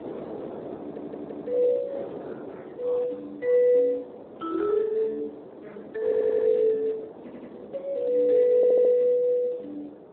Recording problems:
telephone audio; 340 Hz to 3.2 kHz, Speex
wind noise; below 590 Hz, SNR 17 dB
audio stuttering; 4 times, first at 1 s

